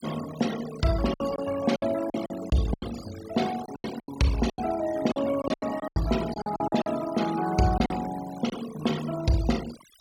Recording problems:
noise reduction artefacts; signal-to-artefact ratio 13 dB
packet loss; 11% of the sound replaced, filled with silence

